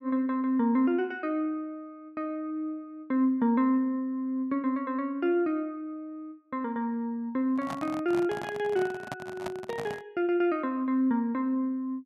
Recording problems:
microphone handling noise; from 7.5 to 10 s; peak -3 dB vs average level

